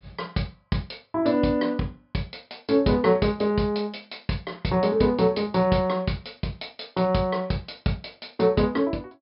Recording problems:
treble missing; nothing above 5.5 kHz

